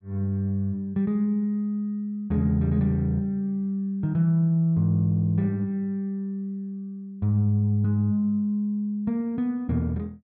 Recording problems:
none

